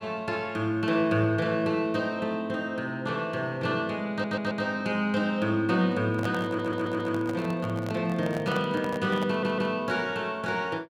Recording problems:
audio stuttering; at 4 s, at 6.5 s and at 9.5 s
microphone handling noise; from 6 to 9.5 s; peak -3 dB vs average level

